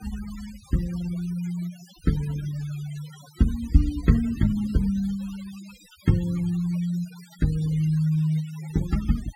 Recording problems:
denoising artefacts; signal-to-artefact ratio 20 dB

